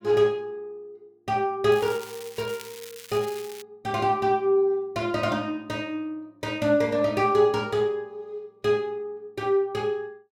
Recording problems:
crackle; from 1.5 to 3.5 s; loose cable, SNR 17 dB

